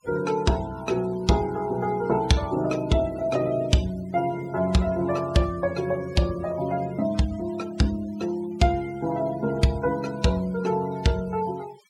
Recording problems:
denoising artefacts; signal-to-artefact ratio 20 dB

